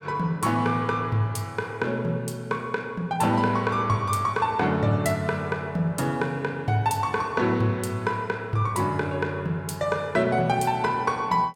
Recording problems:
none

